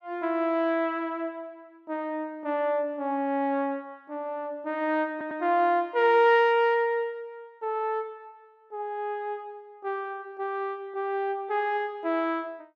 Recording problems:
audio stuttering; at 5 s

